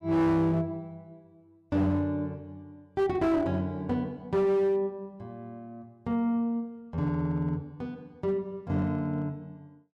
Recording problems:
distortion; hard clipping, uneven, signal-to-distortion ratio 11 dB

